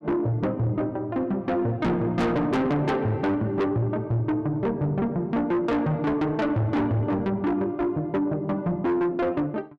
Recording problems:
distorted audio; soft clipping, signal-to-distortion ratio 6 dB

